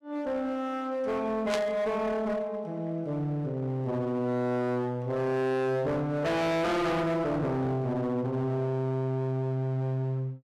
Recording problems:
distortion; hard clipping, uneven, signal-to-distortion ratio 6 dB
burst of static; at 1.5 s; peak 0 dB vs average level

